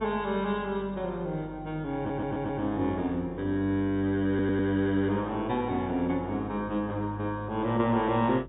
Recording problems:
treble cut off; nothing above 3.7 kHz
hum; 50 Hz, harmonics up to 550 Hz, SNR 18 dB
audio stuttering; at 2 s and at 4.5 s

